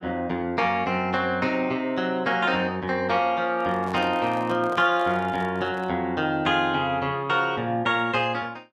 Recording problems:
handling noise; from 3.5 to 6 s; peak -8 dB vs average level

